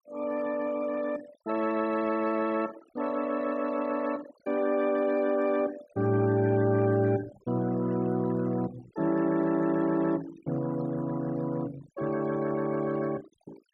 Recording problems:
denoising artefacts; signal-to-artefact ratio 18 dB

